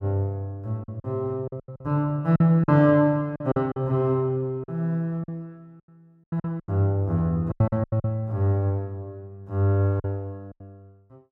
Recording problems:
packet loss; 10% of the sound replaced, filled with silence

